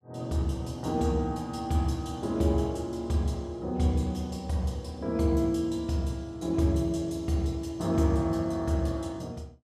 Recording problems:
none

